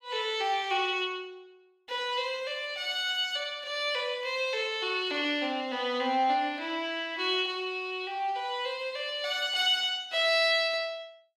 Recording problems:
none

